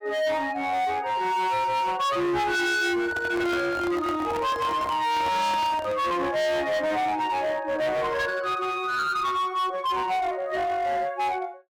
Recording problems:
distorted audio; hard clipping, uneven, signal-to-distortion ratio 7 dB
handling noise; from 3 to 6 s; peak -4 dB vs average level

